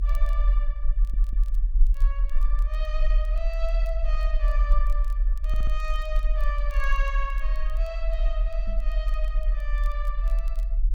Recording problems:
rumble; below 42 Hz, strongest tone 40 Hz, SNR -10 dB
crackling; vinyl, SNR 23 dB
stutter; at 1 s and at 5.5 s
microphone thump; at 8.5 s; peak -2 dB vs average level

